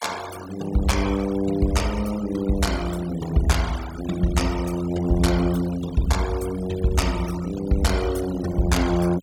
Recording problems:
noise reduction artefacts; signal-to-artefact ratio 15 dB

